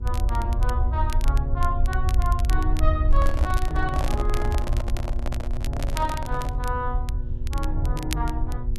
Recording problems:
hum; 60 Hz, harmonics up to 600 Hz, SNR 9 dB
rumble; below 68 Hz, SNR -4 dB
crackling; vinyl, SNR 11 dB
microphone handling noise; from 3 to 6.5 s; peak +2 dB vs average level

